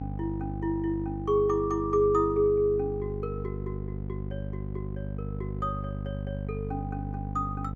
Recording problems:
hum; 50 Hz, harmonics up to 750 Hz, SNR 7 dB

